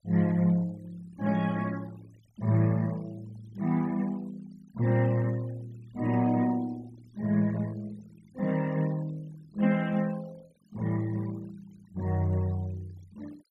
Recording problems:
noise reduction artefacts; signal-to-artefact ratio 24 dB

